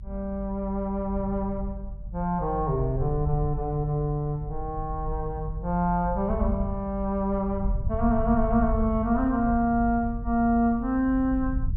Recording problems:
low-frequency rumble; below 78 Hz, SNR 8 dB

